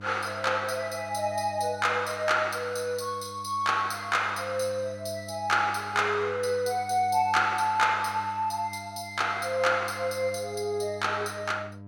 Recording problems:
hum; 50 Hz, harmonics up to 1 kHz, SNR 18 dB

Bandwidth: 17 kHz